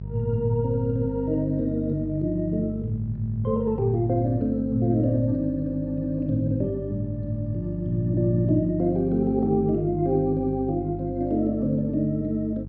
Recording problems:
hum; 50 Hz, harmonics up to 450 Hz, SNR 10 dB

